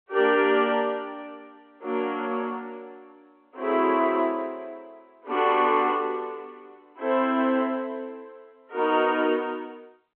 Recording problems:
telephone audio; 240 Hz to 3.4 kHz, G.711

